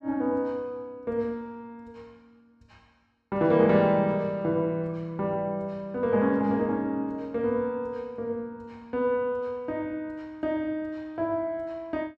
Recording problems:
none

